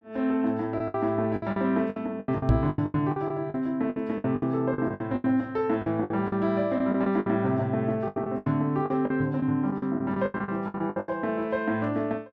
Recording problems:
lost packets; 16% of the sound replaced, filled with the last packet
knock on the microphone; at 2.5 s; peak +8 dB vs average level

